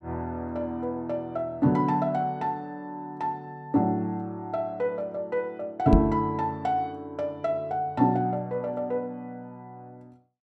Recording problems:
microphone bump; at 6 s; peak +9 dB vs average level

